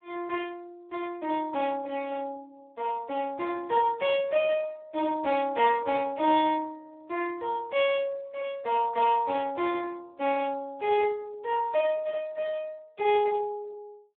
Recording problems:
telephone audio; 280 Hz to 3.6 kHz, Speex

